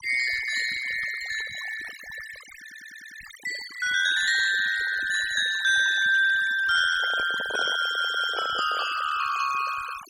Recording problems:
denoising artefacts; signal-to-artefact ratio 14 dB
stutter; at 2.5 s and at 8 s
handling noise; from 7 to 9 s; peak -7 dB vs average level

